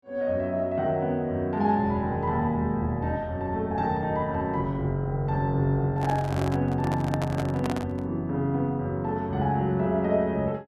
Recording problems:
handling noise; from 6 to 8 s; peak -2 dB vs average level

